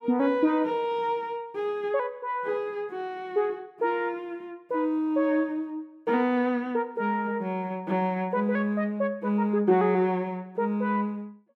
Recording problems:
none

